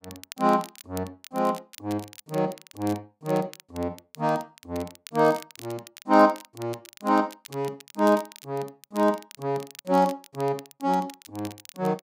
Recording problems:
crackle; vinyl, SNR 19 dB

